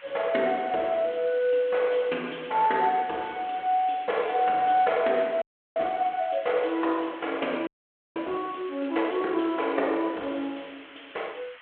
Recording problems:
phone line; 300 Hz to 3.4 kHz, G.726
background hiss; SNR 21 dB
audio freezing; at 5.5 s and at 7.5 s

